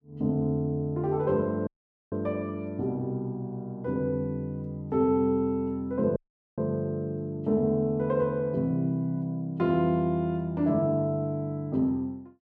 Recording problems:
audio cutting out; at 1.5 s and at 6 s

